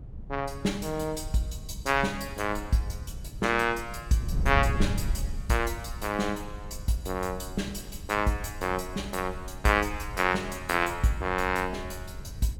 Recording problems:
wind on the microphone; below 100 Hz, SNR 9 dB

